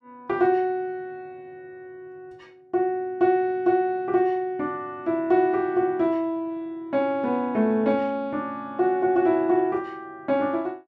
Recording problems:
none

